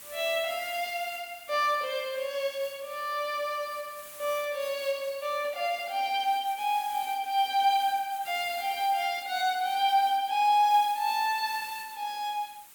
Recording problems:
hiss; slope 0 dB per octave, SNR 17 dB

